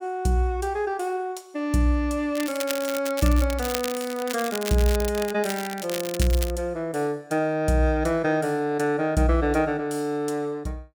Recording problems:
crackle; from 2.5 to 5.5 s and from 5.5 to 6.5 s; loose cable, SNR 9 dB

